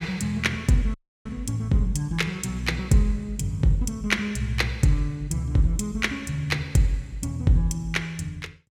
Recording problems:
audio cutting out; at 1 s

